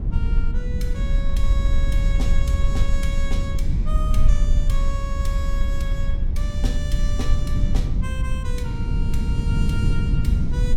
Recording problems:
rumble; below 54 Hz, SNR -9 dB
wind noise; below 160 Hz, SNR -5 dB

